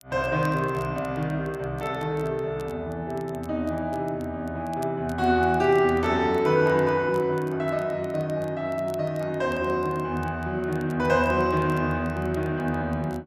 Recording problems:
crackle; vinyl, SNR 28 dB

